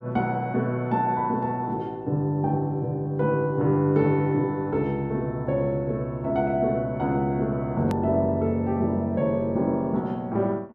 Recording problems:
hard cut with a click; at 8 s

